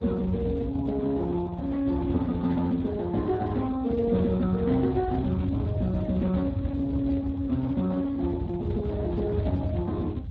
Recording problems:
lossy codec; Speex, log-spectral distance 3 dB
rumble; below 120 Hz, SNR 7 dB

